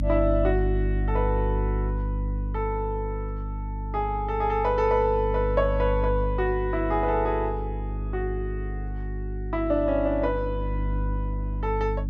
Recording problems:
electrical hum; 50 Hz, harmonics up to 300 Hz, SNR 3 dB

